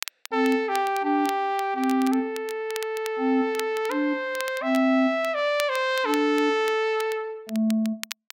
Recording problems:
crackle; vinyl, SNR 16 dB

